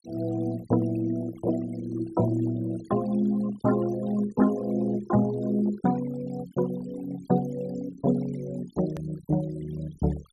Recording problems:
noise reduction artefacts; signal-to-artefact ratio 20 dB
hard cut with a click; at 9 s

